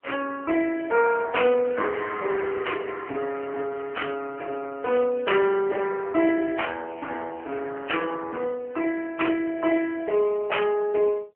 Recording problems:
telephone audio; 260 Hz to 3 kHz, AMR-NB

